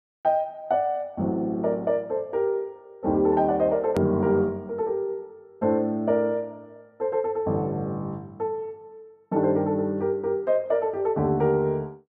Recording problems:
hard cut with a click; at 4 s

